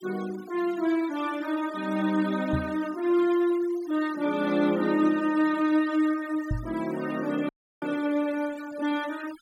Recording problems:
noise reduction artefacts; signal-to-artefact ratio 19 dB
microphone bump; at 2.5 s and at 6.5 s; peak +1 dB vs average level
audio cutting out; at 7.5 s

